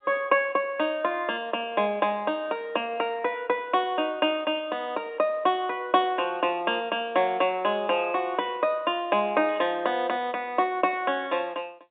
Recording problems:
telephone audio; 240 Hz to 3.6 kHz, G.711

